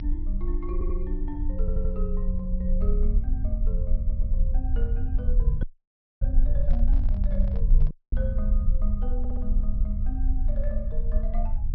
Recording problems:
low-pass filter; nothing above 5.6 kHz
rumble; below 50 Hz, strongest tone 26 Hz, SNR -10 dB
audio stuttering; 4 times, first at 0.5 s
audio cutting out; at 5.5 s for 0.5 s and at 8 s
microphone handling noise; from 6.5 to 8 s; peak -7 dB vs average level

